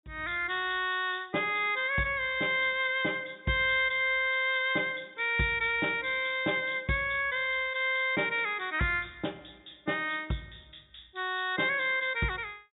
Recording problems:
treble cut off; nothing above 4 kHz

